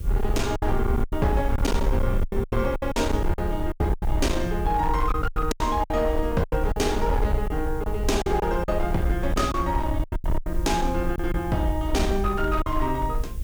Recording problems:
distortion; hard clipping, signal-to-distortion ratio 12 dB
hum; 60 Hz, harmonics up to 540 Hz, SNR 20 dB
hiss; slope 0 dB per octave, SNR 23 dB
rumble; below 70 Hz, SNR 4 dB
packet loss; 11% of the sound replaced, filled with silence

